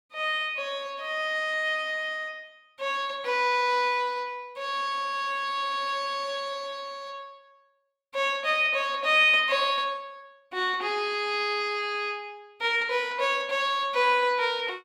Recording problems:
none

